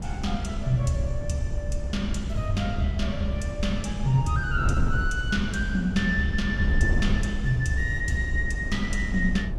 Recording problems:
wind noise; below 96 Hz, SNR 3 dB

